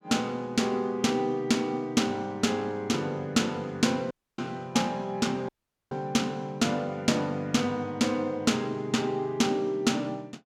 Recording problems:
audio cutting out; at 4 s and at 5.5 s

